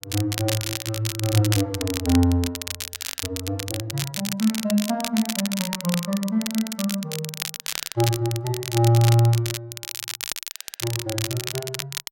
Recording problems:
crackling; vinyl, SNR 6 dB

